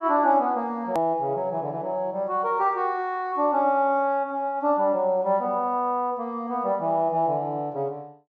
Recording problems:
treble cut off; nothing above 7.7 kHz
click at an edit; at 1 s

